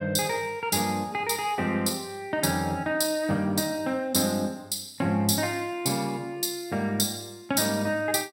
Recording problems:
none

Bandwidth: 16.5 kHz